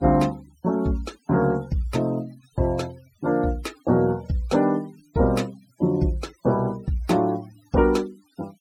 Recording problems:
noise reduction artefacts; signal-to-artefact ratio 24 dB

